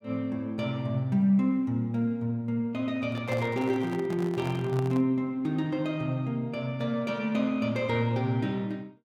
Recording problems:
microphone handling noise; from 3 to 5 s; peak -4 dB vs average level

